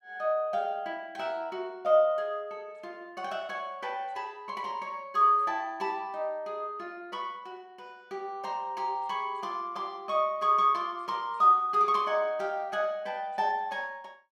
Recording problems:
none

